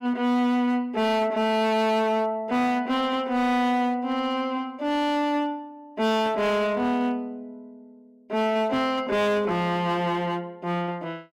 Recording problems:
distortion; hard clipping, signal-to-distortion ratio 11 dB

